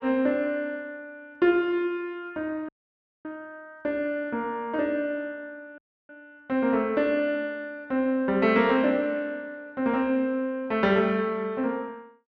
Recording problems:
dropout; at 2.5 s for 0.5 s and at 6 s

